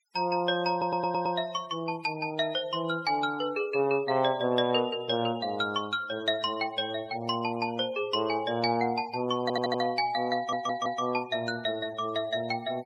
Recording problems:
denoising artefacts; signal-to-artefact ratio 20 dB
stutter; at 0.5 s, at 9.5 s and at 10 s

